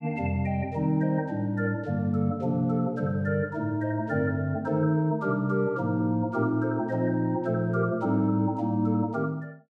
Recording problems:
none

